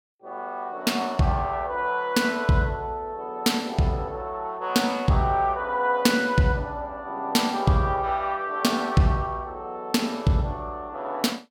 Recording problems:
none

